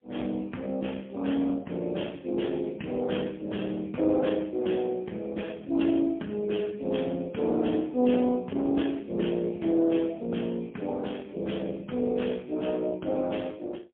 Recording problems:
telephone audio; 110 Hz to 3.5 kHz, AMR-NB, then MP3

